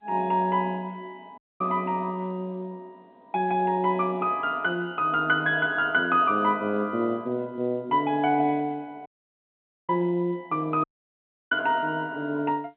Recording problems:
telephone audio; 190 Hz to 3.8 kHz, G.711
dropout; at 1.5 s, at 9 s for 1 s and at 11 s for 0.5 s

